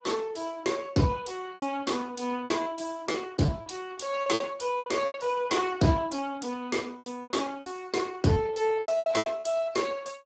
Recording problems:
codec artefacts; Speex, log-spectral distance 5 dB, nothing above 7.6 kHz
packet loss; 10% of the sound replaced, filled with repeated pitch periods

